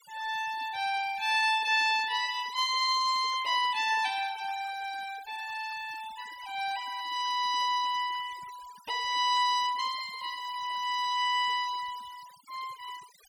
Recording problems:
denoising artefacts; signal-to-artefact ratio 17 dB

